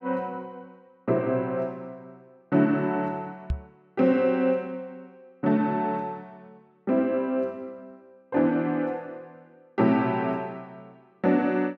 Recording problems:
knock on the microphone; at 3.5 s; peak +1 dB vs average level

